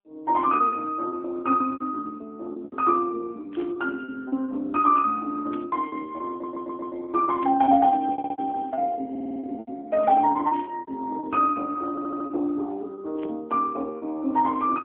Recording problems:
phone line; 240 Hz to 3.2 kHz, AMR-NB
lost packets; 14% of the sound replaced, filled with repeated pitch periods
burst of static; 5 times, first at 3.5 s; peak -14 dB vs average level
audio stuttering; 4 times, first at 6.5 s

